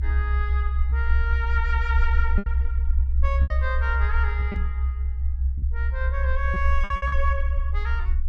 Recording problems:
rumble; below 66 Hz, strongest tone 64 Hz, SNR -6 dB
packet loss; 6% of the sound replaced, filled with repeated pitch periods
knock on the microphone; at 4.5 s; peak 0 dB vs average level

